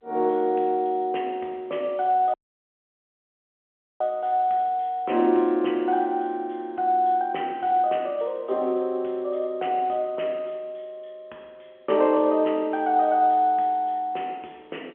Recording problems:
phone line; 280 Hz to 3.2 kHz, G.711
dropout; at 2.5 s for 1.5 s

